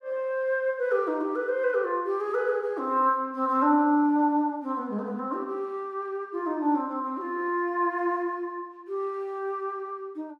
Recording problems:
none

